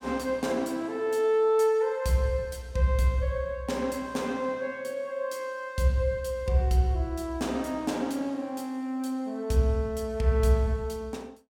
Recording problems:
none

